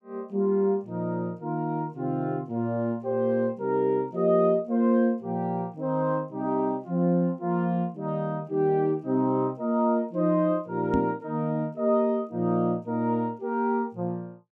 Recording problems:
knock on the microphone; at 11 s; peak +4 dB vs average level

